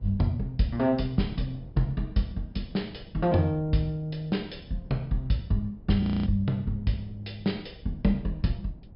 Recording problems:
treble cut off; nothing above 5.5 kHz
wind on the microphone; below 180 Hz, SNR 20 dB
frozen audio; at 6 s

